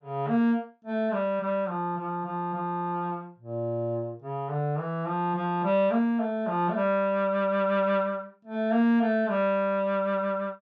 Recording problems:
none

